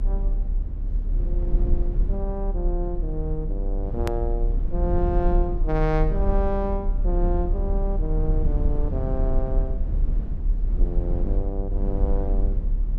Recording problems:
low-frequency rumble; below 50 Hz, strongest tone 34 Hz, SNR -3 dB
click at an edit; at 4 s

